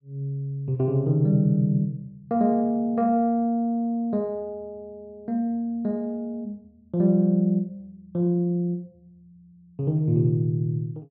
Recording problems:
treble missing; nothing above 5.5 kHz

